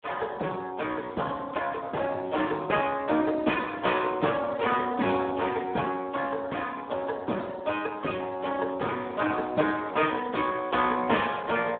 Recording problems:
telephone audio; 220 Hz to 3.4 kHz, Speex

